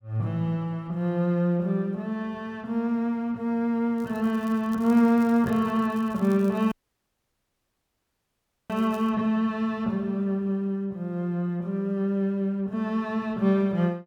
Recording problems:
crackle; from 4 to 9 s; loose cable, SNR 27 dB
audio cutting out; at 6.5 s for 2 s

